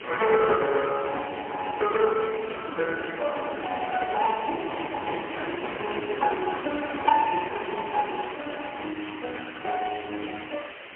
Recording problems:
telephone audio; 280 Hz to 2.7 kHz, AMR-NB, then MP3
hiss; SNR 13 dB
wind noise; below 670 Hz, SNR 10 dB

